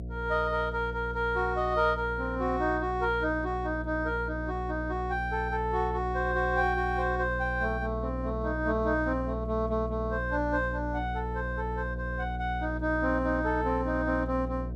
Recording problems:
hum; 60 Hz, harmonics up to 660 Hz, SNR 7 dB

